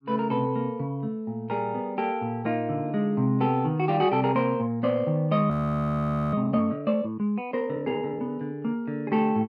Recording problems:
audio freezing; at 5.5 s for 1 s

